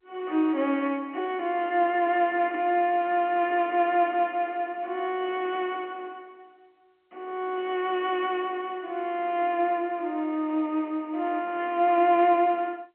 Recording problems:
telephone audio; 240 Hz to 3.8 kHz, G.711

